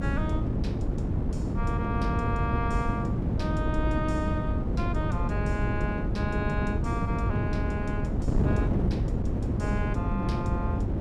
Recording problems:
electrical hum; 50 Hz, harmonics up to 600 Hz, SNR 3 dB
wind on the microphone; below 250 Hz, SNR -5 dB

